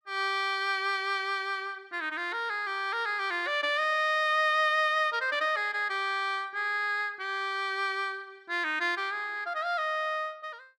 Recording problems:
none

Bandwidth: 14 kHz